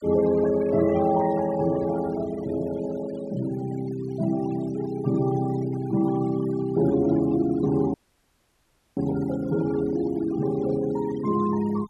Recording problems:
noise reduction artefacts; signal-to-artefact ratio 17 dB
audio cutting out; at 8 s for 1 s

